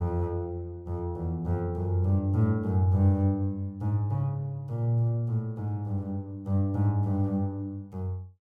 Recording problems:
none

